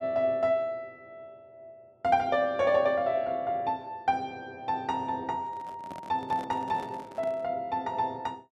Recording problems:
microphone handling noise; from 5.5 to 7.5 s; peak -10 dB vs average level

